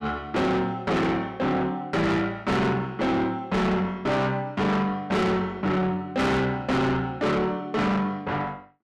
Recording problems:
distortion; soft clipping, signal-to-distortion ratio 6 dB

